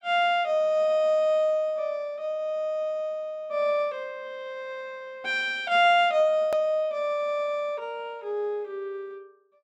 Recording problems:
hard cut with a click; at 6.5 s

